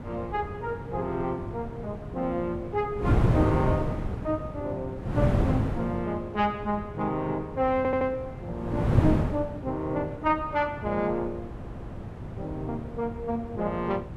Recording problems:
wind on the microphone; below 280 Hz, SNR 2 dB
audio stuttering; at 8 s and at 11 s

